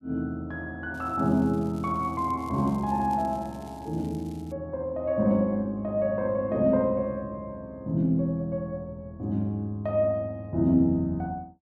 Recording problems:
crackle; from 1 to 4.5 s; loose cable, SNR 28 dB

